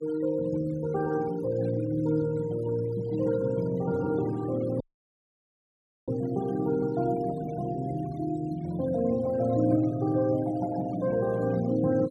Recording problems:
noise reduction artefacts; signal-to-artefact ratio 21 dB
dropout; at 5 s for 1.5 s

